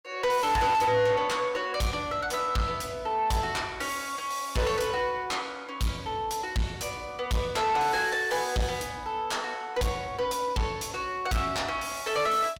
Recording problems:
distorted audio; soft clipping, signal-to-distortion ratio 6 dB

